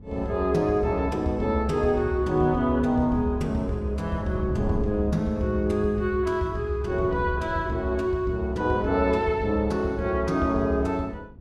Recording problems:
wind noise; below 200 Hz, SNR 16 dB

